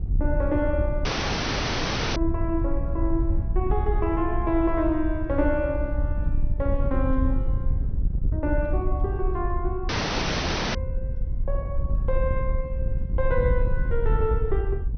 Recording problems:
treble missing; nothing above 6.2 kHz
wind noise; below 72 Hz, SNR 0 dB
dropout; at 1 s for 1 s and at 10 s for 1 s

